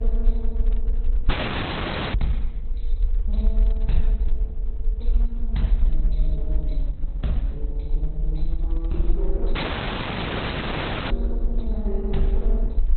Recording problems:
lossy compression; Opus, log-spectral distance 4 dB, nothing above 4.1 kHz
low-frequency rumble; below 44 Hz, SNR -6 dB
wind noise; below 410 Hz, SNR 23 dB
audio cutting out; at 1.5 s for 1 s and at 9.5 s for 1.5 s

